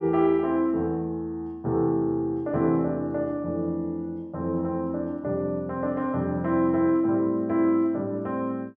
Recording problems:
none

